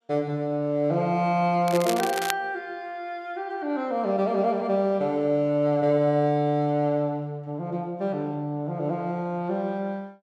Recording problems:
crackling; at 1.5 s; loose cable, SNR 8 dB

